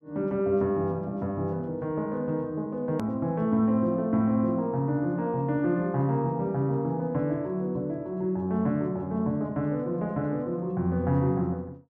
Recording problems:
edit click; at 3 s

